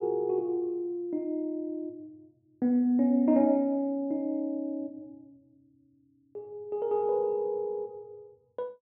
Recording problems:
none

